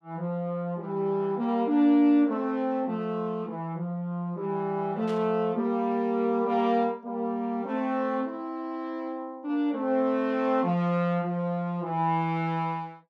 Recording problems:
burst of static; at 5 s; peak -13 dB vs average level

